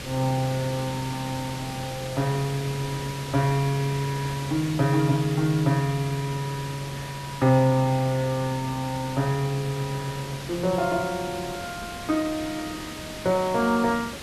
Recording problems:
hiss; SNR 10 dB

